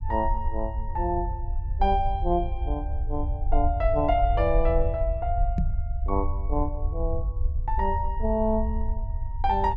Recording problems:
rumble; below 66 Hz, SNR 2 dB
microphone thump; at 5.5 s; peak +4 dB vs average level

